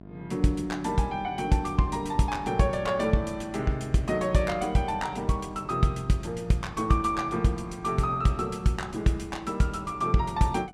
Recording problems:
hum; 50 Hz, harmonics up to 1.1 kHz, SNR 20 dB

